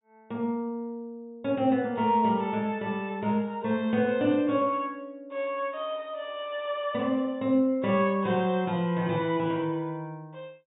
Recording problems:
treble missing; nothing above 4 kHz

